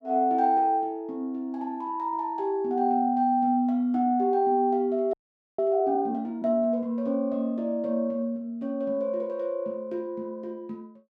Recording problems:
audio freezing; at 5 s

